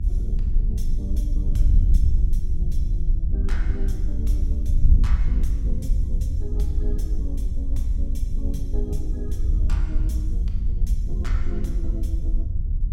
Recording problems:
hum; 50 Hz, harmonics up to 350 Hz, SNR 19 dB
wind on the microphone; below 60 Hz, SNR -12 dB

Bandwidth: 17.5 kHz